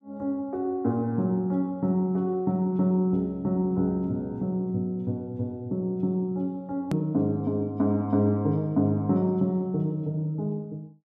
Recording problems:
edit click; at 7 s

